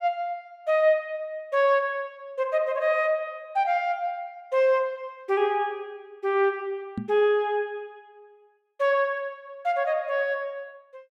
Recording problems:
microphone thump; at 7 s; peak -1 dB vs average level

